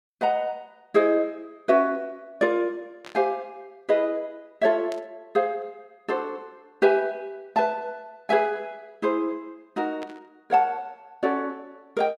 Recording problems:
static burst; at 3 s, at 5 s and at 10 s; peak -11 dB vs average level

